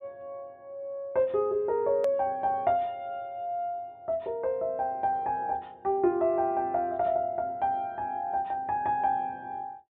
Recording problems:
treble missing; nothing above 4 kHz
edit click; at 2 s

